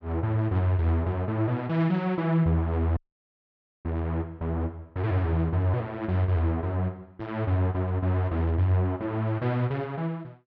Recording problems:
dropout; at 3 s for 1 s

